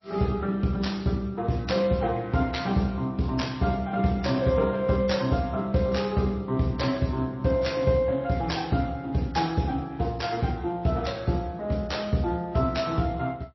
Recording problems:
codec artefacts; Speex, then MP3, log-spectral distance 3 dB, nothing above 5.7 kHz

